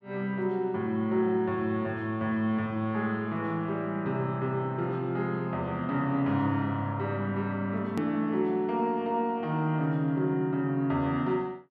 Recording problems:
hard cut with a click; at 8 s

